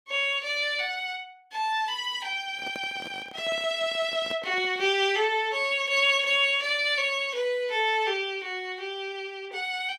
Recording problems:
handling noise; from 2.5 to 5 s; peak -10 dB vs average level

